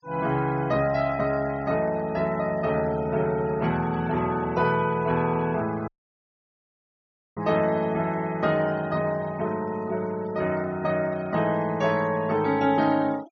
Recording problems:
treble cut off; nothing above 6.7 kHz
noise reduction artefacts; signal-to-artefact ratio 22 dB
dropout; at 6 s for 1.5 s

